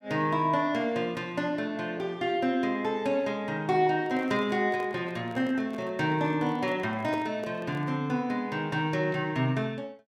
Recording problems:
handling noise; from 4 to 8 s; peak -6 dB vs average level

